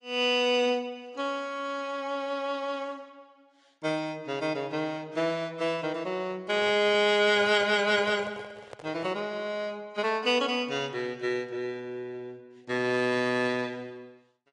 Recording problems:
lossy compression; AAC, log-spectral distance 2 dB, nothing above 10.4 kHz
microphone handling noise; from 6.5 to 9.5 s; peak -11 dB vs average level

